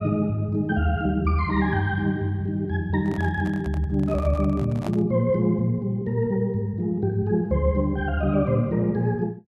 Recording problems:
handling noise; from 3 to 5 s; peak -7 dB vs average level

